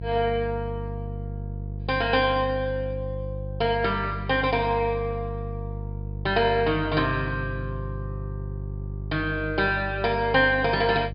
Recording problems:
treble cut off; nothing above 5.1 kHz
hum; 50 Hz, harmonics up to 500 Hz, SNR 9 dB

